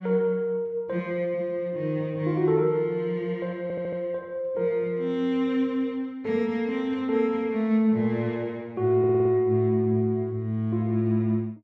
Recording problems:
stutter; at 3.5 s and at 9 s

